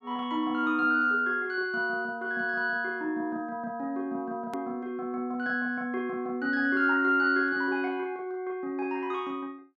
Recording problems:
edit click; at 4.5 s

